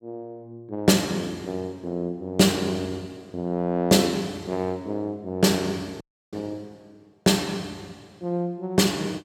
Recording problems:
dropout; at 6 s

